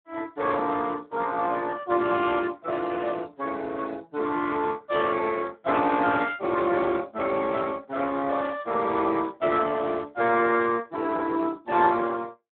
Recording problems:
phone line; 220 Hz to 3.5 kHz, Speex

